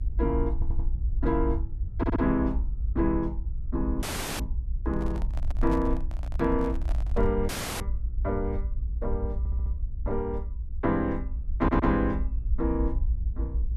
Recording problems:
low-frequency rumble; below 60 Hz, SNR 2 dB
stutter; 4 times, first at 0.5 s
dropout; at 4 s and at 7.5 s
handling noise; from 5 to 7.5 s; peak -6 dB vs average level

